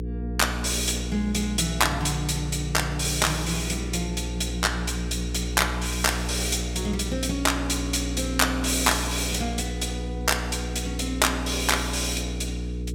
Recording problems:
hum; 60 Hz, harmonics up to 480 Hz, SNR 6 dB

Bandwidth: 17 kHz